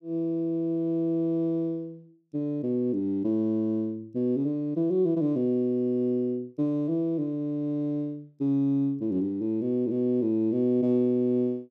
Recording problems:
none

